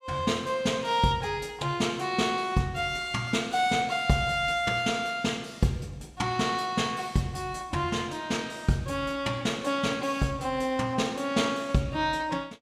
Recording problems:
none

